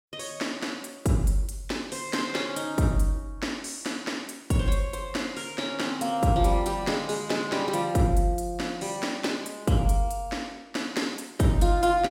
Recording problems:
none

